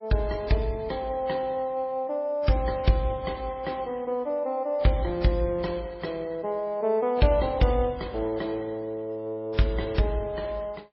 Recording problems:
lossy compression; MP3, then AAC, log-spectral distance 2 dB

